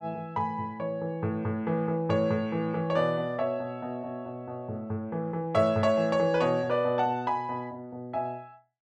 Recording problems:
none

